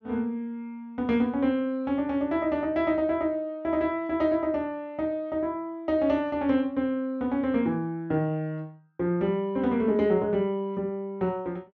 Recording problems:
treble missing; nothing above 6.7 kHz

